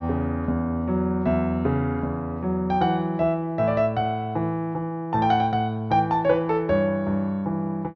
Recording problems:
low-pass filter; nothing above 6.6 kHz

